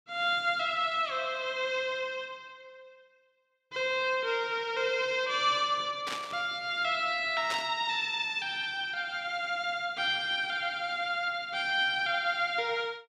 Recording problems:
burst of static; at 6 s and at 7.5 s; peak -2 dB vs average level

